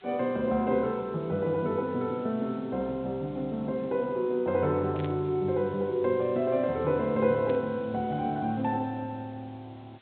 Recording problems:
treble missing; nothing above 4 kHz
background hiss; SNR 28 dB
static burst; at 5 s and at 7.5 s; peak -12 dB vs average level

